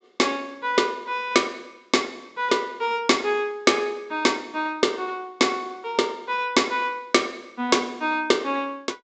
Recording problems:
low-pass filter; nothing above 8 kHz

